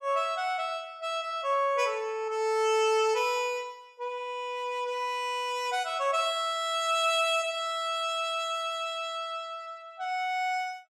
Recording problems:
none

